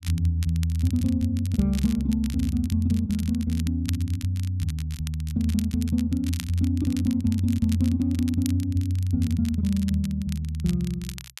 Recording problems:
crackle; vinyl, SNR 18 dB

